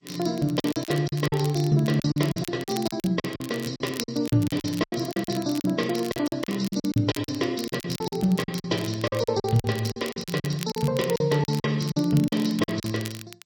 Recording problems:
codec artefacts; MP3, then G.722, log-spectral distance 5 dB, nothing above 17 kHz
crackling; vinyl, SNR 15 dB
lost packets; 16% of the sound replaced, filled with silence

